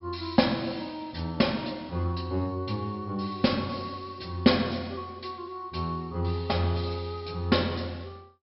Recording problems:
low-pass filter; nothing above 5.5 kHz

